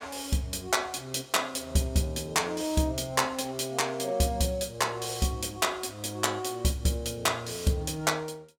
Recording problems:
none

